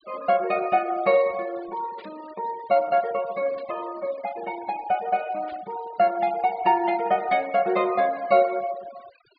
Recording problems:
treble cut off; nothing above 4.9 kHz
noise reduction artefacts; signal-to-artefact ratio 21 dB
burst of static; at 2 s, at 3.5 s and at 5.5 s; peak -20 dB vs average level

